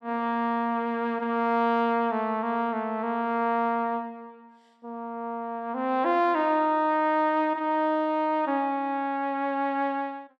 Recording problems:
none

